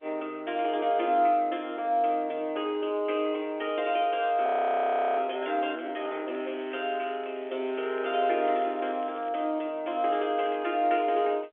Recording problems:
telephone audio; 320 Hz to 3.4 kHz, G.711
audio freezing; at 4.5 s for 0.5 s
crackle; from 6.5 to 9.5 s and at 10 s; loose cable, SNR 25 dB

